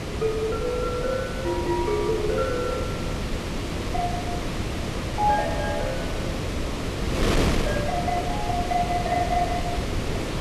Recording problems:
wind noise; below 750 Hz, SNR 1 dB

